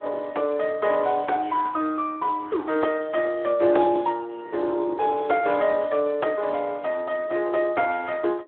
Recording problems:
telephone audio; 280 Hz to 3.6 kHz, Speex
wind on the microphone; below 500 Hz, SNR 20 dB

